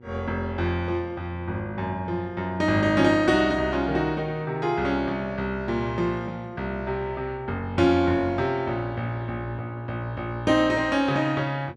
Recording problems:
electrical hum; 60 Hz, harmonics up to 960 Hz, SNR 25 dB

